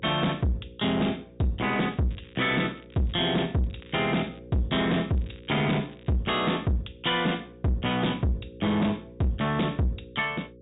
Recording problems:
low-pass filter; nothing above 4 kHz
distorted audio; soft clipping, signal-to-distortion ratio 7 dB
hum; 60 Hz, harmonics up to 540 Hz, SNR 22 dB
crackling; from 2 to 4.5 s and from 5 to 6 s; loose cable, SNR 27 dB

